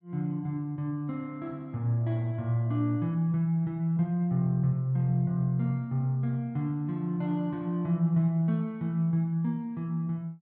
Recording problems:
none

